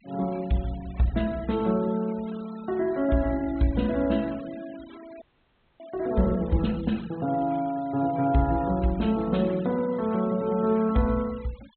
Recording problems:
treble cut off; nothing above 4 kHz
noise reduction artefacts; signal-to-artefact ratio 22 dB
audio freezing; at 5 s for 0.5 s

